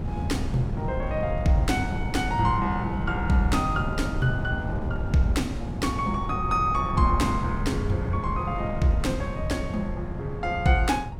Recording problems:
wind on the microphone; below 170 Hz, SNR 5 dB

